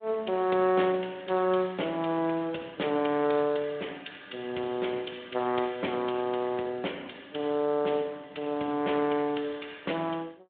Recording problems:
phone line; 220 Hz to 3.6 kHz, Speex

